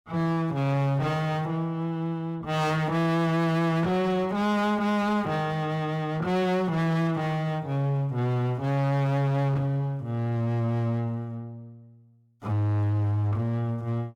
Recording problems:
distortion; hard clipping, signal-to-distortion ratio 6 dB

